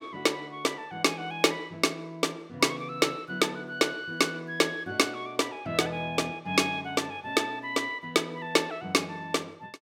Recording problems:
none

